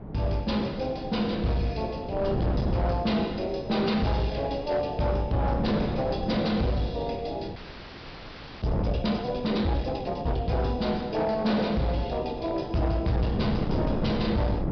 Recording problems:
treble missing; nothing above 5.5 kHz
distorted audio; hard clipping, signal-to-distortion ratio 10 dB
wind noise; below 380 Hz, SNR 7 dB
frozen audio; at 7.5 s for 1 s

